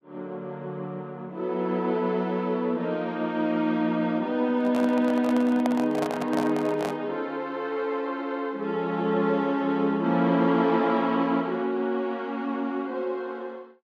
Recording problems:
microphone handling noise; from 4.5 to 7 s; peak 0 dB vs average level

